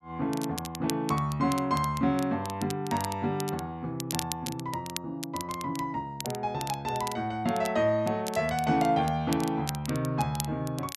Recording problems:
crackle; vinyl, SNR 11 dB

